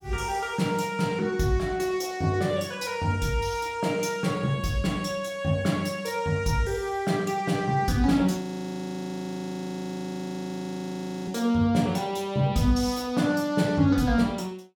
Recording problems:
audio freezing; at 8.5 s for 3 s

